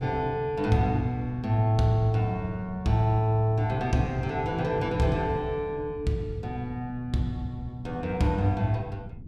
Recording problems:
wind on the microphone; below 170 Hz, SNR 15 dB

